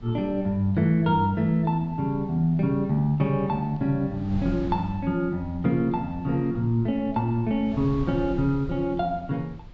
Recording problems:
low-pass filter; nothing above 8 kHz
wind on the microphone; below 120 Hz, SNR 17 dB

